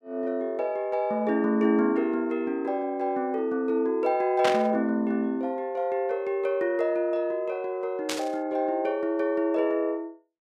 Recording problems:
static burst; at 4.5 s and at 8 s; peak +2 dB vs average level

